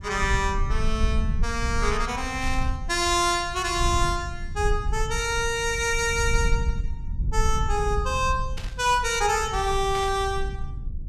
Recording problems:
rumble; below 70 Hz, SNR 6 dB
static burst; at 2.5 s, at 8.5 s and at 10 s; peak -8 dB vs average level

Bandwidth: 14.5 kHz